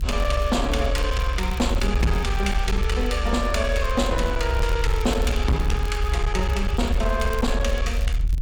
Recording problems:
distorted audio; hard clipping, uneven, signal-to-distortion ratio 10 dB
rumble; below 64 Hz, strongest tone 40 Hz, SNR 1 dB
crackle; vinyl, SNR 21 dB

